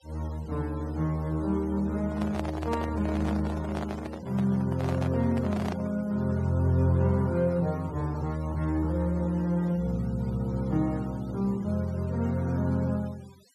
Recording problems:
noise reduction artefacts; signal-to-artefact ratio 24 dB
handling noise; from 2 to 6 s; peak -2 dB vs average level

